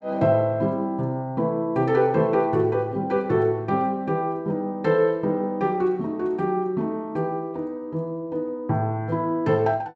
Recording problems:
none

